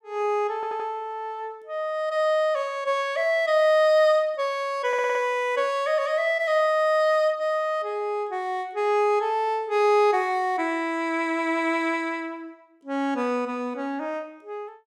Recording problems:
stutter; at 0.5 s and at 5 s

